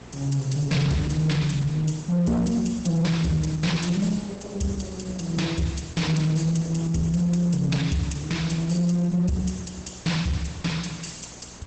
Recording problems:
lossy codec; Opus, log-spectral distance 5 dB, nothing above 8 kHz
distorted audio; hard clipping, uneven, signal-to-distortion ratio 11 dB
hum; 60 Hz, harmonics up to 600 Hz, SNR 23 dB
background hiss; slope -5 dB per octave, SNR 22 dB

